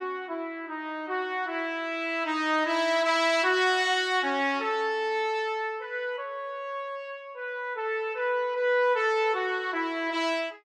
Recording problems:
none

